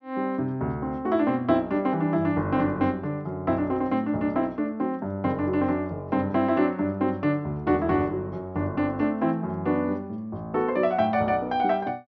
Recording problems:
low-pass filter; nothing above 6.2 kHz

